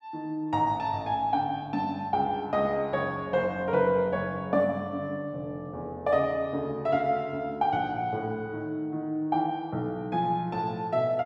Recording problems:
none

